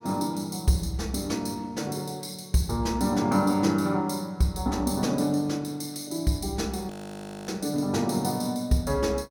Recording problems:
audio freezing; at 7 s for 0.5 s

